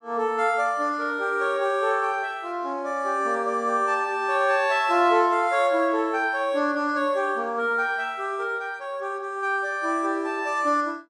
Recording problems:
none

